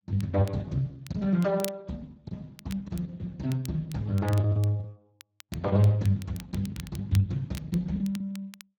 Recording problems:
codec artefacts; Speex, log-spectral distance 2 dB, nothing above 16 kHz
crackling; vinyl, SNR 19 dB
packet loss; 9% of the sound replaced, filled with the last packet

